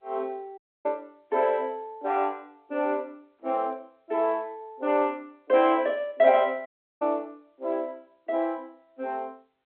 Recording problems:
phone line; 240 Hz to 3.9 kHz, G.711
dropout; at 0.5 s and at 6.5 s

